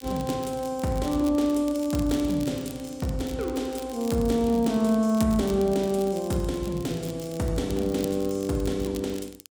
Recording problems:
crackle; vinyl, SNR 18 dB

